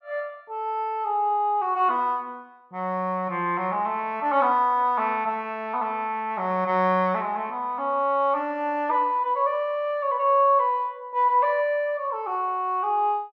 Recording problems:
none

